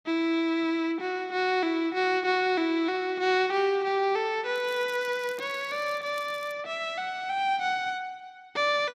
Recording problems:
crackling; from 4.5 to 6.5 s; loose cable, SNR 24 dB

